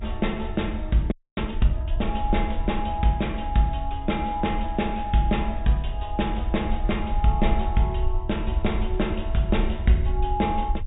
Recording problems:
treble cut off; nothing above 4 kHz
rumble; below 66 Hz, SNR 5 dB
audio freezing; at 1 s

